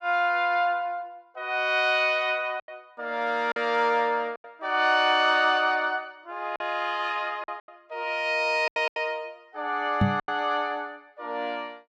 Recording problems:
packet loss; 6% of the sound replaced, filled with silence
microphone bump; at 10 s; peak +6 dB vs average level

